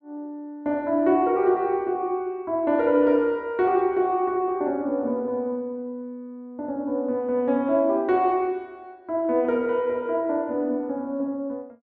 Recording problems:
none

